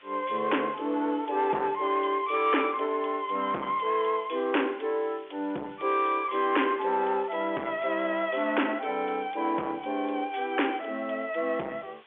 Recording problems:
telephone audio; 260 Hz to 3.5 kHz, G.711
distortion; soft clipping, signal-to-distortion ratio 9 dB
background hiss; SNR 26 dB

